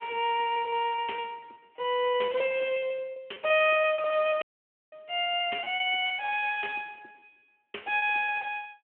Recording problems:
phone line; 340 Hz to 3.2 kHz, Speex
lost packets; 17% of the sound replaced, filled with repeated pitch periods
audio cutting out; at 4.5 s for 0.5 s

